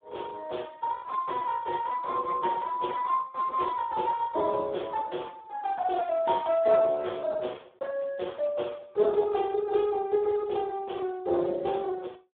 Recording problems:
telephone audio; 300 Hz to 2 kHz, Speex

